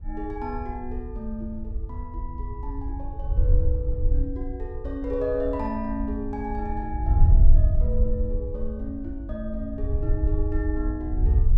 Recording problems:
wind noise; below 70 Hz, SNR -5 dB

